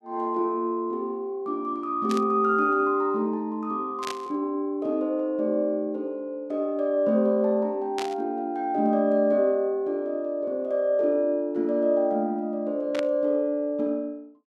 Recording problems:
burst of static; 4 times, first at 2 s; peak -5 dB vs average level

